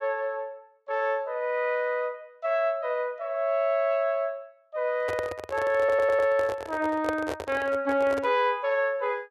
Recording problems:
handling noise; from 5 to 8.5 s; peak 0 dB vs average level
stutter; at 6 s

